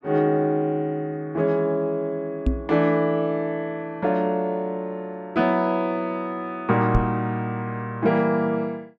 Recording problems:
microphone bump; at 2.5 s and at 7 s; peak +5 dB vs average level

